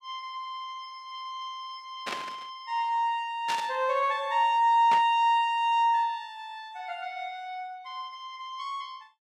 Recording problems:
burst of static; at 2 s, at 3.5 s and at 5 s; peak -2 dB vs average level

